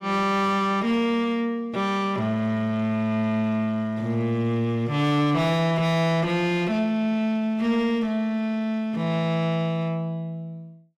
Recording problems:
distorted audio; soft clipping, signal-to-distortion ratio 8 dB

